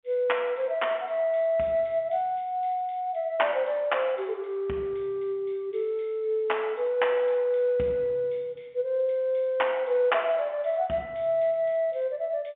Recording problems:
telephone audio; 190 Hz to 3.3 kHz, G.711

